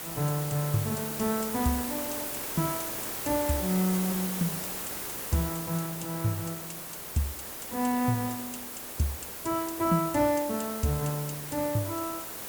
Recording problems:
hiss; slope -3 dB per octave, SNR 4 dB

